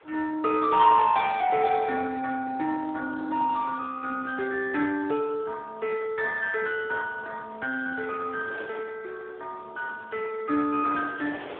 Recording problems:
phone line; 260 Hz to 3.1 kHz, Speex
wind noise; below 1.5 kHz, SNR 24 dB

